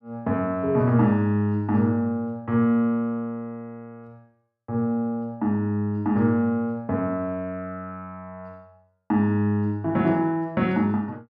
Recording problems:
none

